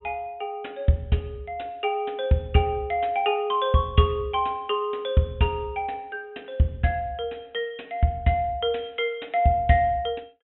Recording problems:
low-pass filter; nothing above 3.6 kHz

